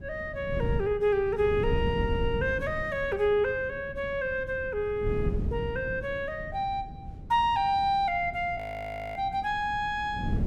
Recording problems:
wind noise; below 170 Hz, SNR 8 dB
audio freezing; at 8.5 s for 0.5 s

